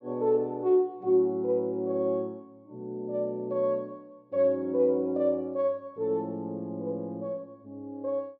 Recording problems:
none

